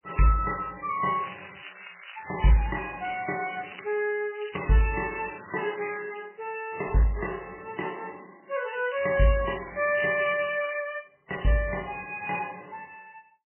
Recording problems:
lossy codec; MP3, log-spectral distance 13 dB, nothing above 2.5 kHz
crackling; 4 times, first at 1 s; loose cable, SNR 14 dB

